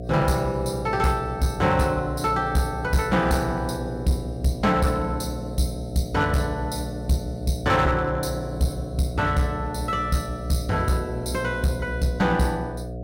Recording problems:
distorted audio; hard clipping, uneven, signal-to-distortion ratio 11 dB
hum; 60 Hz, harmonics up to 720 Hz, SNR 9 dB

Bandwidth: 16 kHz